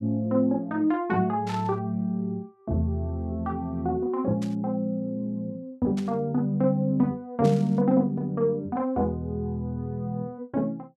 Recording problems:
static burst; 4 times, first at 1.5 s; peak -10 dB vs average level

